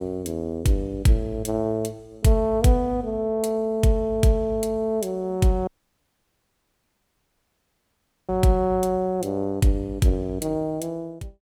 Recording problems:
audio cutting out; at 5.5 s for 2.5 s

